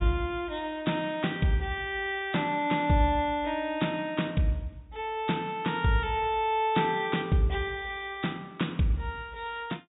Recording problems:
treble cut off; nothing above 4 kHz

